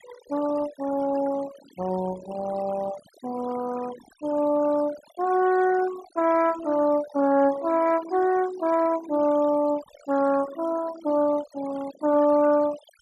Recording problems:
noise reduction artefacts; signal-to-artefact ratio 18 dB

